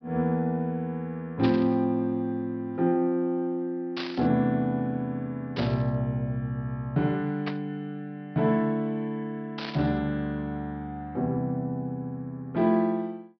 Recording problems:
treble cut off; nothing above 5.5 kHz
burst of static; 5 times, first at 1.5 s; peak -3 dB vs average level

